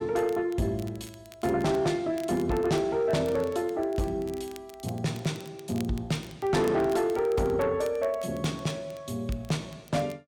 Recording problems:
distorted audio; soft clipping, signal-to-distortion ratio 11 dB
crackle; vinyl, SNR 23 dB

